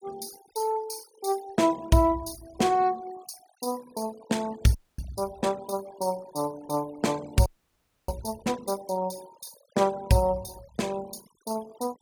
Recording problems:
noise reduction artefacts; signal-to-artefact ratio 21 dB
frozen audio; at 5 s and at 7.5 s for 0.5 s

